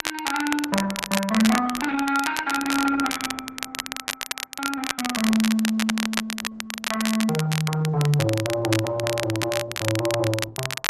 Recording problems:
codec artefacts; Opus, log-spectral distance 3 dB
crackling; vinyl, SNR 5 dB

